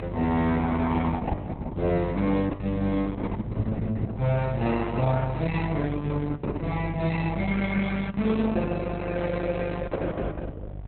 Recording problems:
codec artefacts; Opus, log-spectral distance 3 dB, nothing above 4 kHz
electrical hum; 50 Hz, harmonics up to 750 Hz, SNR 9 dB

